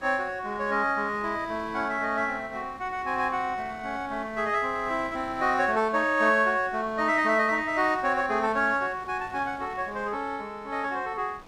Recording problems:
wind on the microphone; below 1.4 kHz, SNR 23 dB

